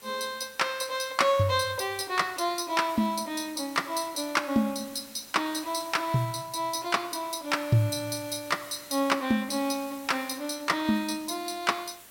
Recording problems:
hiss; slope -1 dB per octave, SNR 19 dB

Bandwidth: 16.5 kHz